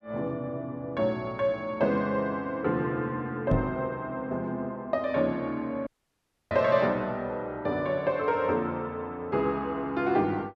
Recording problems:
microphone thump; at 3.5 s and at 6.5 s; peak +5 dB vs average level
dropout; at 6 s for 0.5 s

